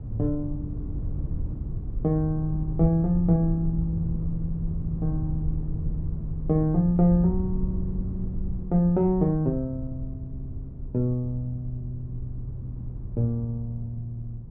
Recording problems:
rumble; below 110 Hz, SNR 7 dB

